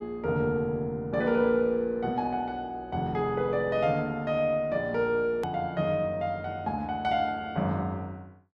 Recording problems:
edit click; at 5.5 s

